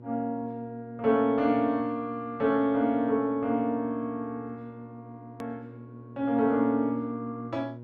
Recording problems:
hum; 60 Hz, harmonics up to 960 Hz, SNR 19 dB
click at an edit; at 5.5 s

